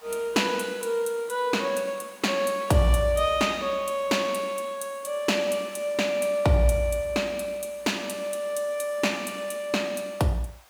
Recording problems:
background hiss; SNR 26 dB

